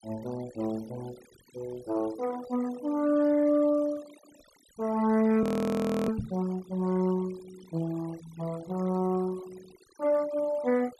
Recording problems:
denoising artefacts; signal-to-artefact ratio 21 dB
frozen audio; at 5.5 s for 0.5 s
microphone bump; at 6 s; peak -1 dB vs average level

